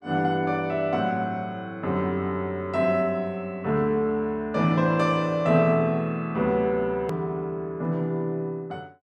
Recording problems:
hard cut with a click; at 7 s

